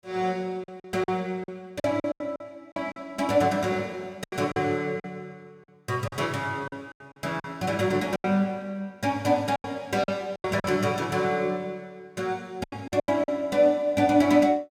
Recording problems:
lost packets; 10% of the sound replaced, filled with silence

